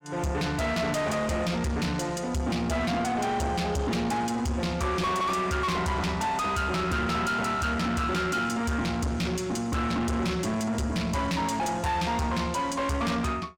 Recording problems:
distortion; soft clipping, signal-to-distortion ratio 6 dB

